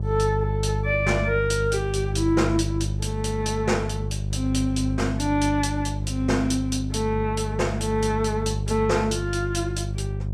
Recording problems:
hum; 50 Hz, harmonics up to 550 Hz, SNR 3 dB

